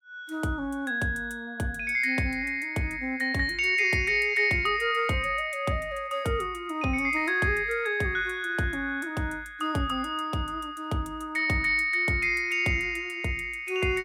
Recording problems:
none

